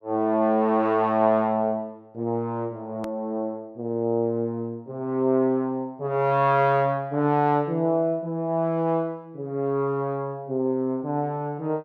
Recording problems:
edit click; at 3 s

